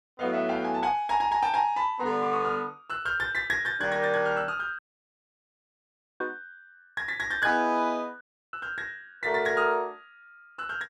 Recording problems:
audio cutting out; at 5 s for 1.5 s and at 8 s

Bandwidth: 14.5 kHz